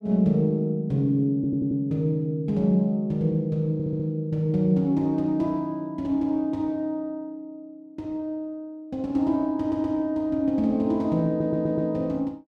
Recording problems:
stutter; 4 times, first at 1.5 s

